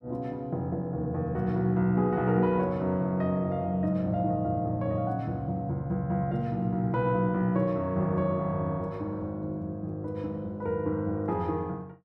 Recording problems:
none

